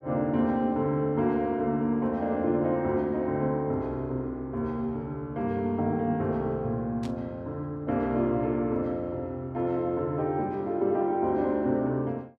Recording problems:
burst of static; at 7 s; peak -13 dB vs average level

